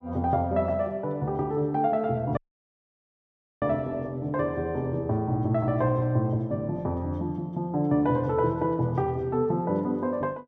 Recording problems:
audio cutting out; at 2.5 s for 1.5 s

